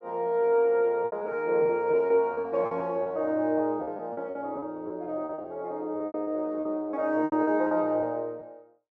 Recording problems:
packet loss; 12% of the sound replaced, filled with repeated pitch periods

